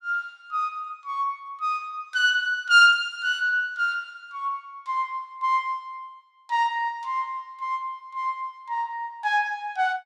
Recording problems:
none

